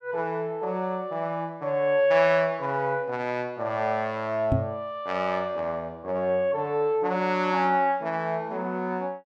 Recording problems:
knock on the microphone; at 4.5 s; peak +5 dB vs average level

